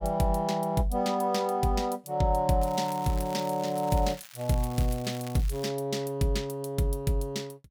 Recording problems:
crackle; from 2.5 to 5.5 s; loose cable, SNR 18 dB

